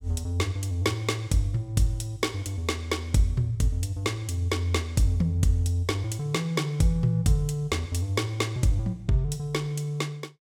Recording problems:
none

